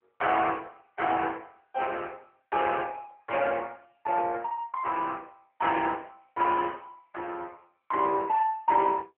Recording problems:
telephone audio; 320 Hz to 3.1 kHz, AMR-NB

